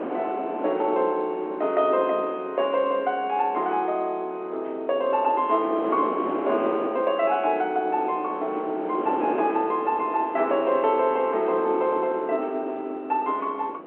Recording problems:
phone line; 280 Hz to 3.4 kHz, G.711
wind on the microphone; below 670 Hz, SNR 9 dB

